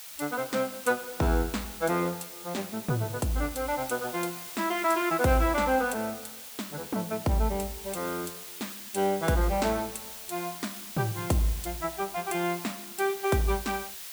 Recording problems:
hiss; slope +3 dB per octave, SNR 10 dB

